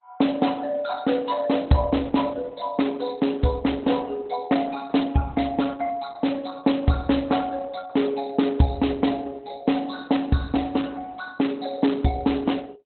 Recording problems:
lossy codec; Opus, log-spectral distance 5 dB, nothing above 4.1 kHz

